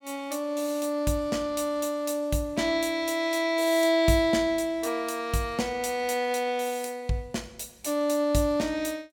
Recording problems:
none

